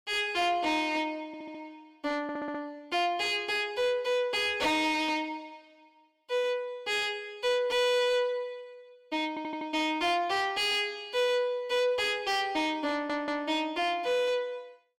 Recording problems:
distorted audio; soft clipping, signal-to-distortion ratio 10 dB
audio stuttering; 4 times, first at 1.5 s

